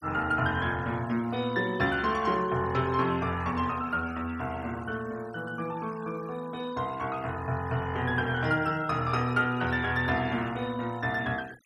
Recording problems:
denoising artefacts; signal-to-artefact ratio 21 dB

